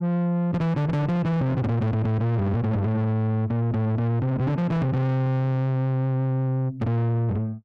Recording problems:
distorted audio; soft clipping, signal-to-distortion ratio 6 dB

